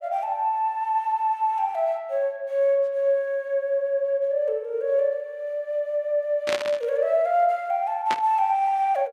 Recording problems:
burst of static; at 6.5 s and at 8 s; peak 0 dB vs average level

